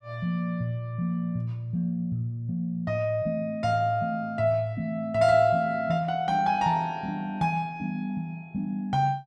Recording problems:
none

